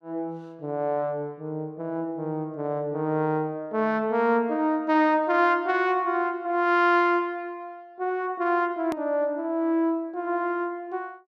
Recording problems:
click at an edit; at 9 s

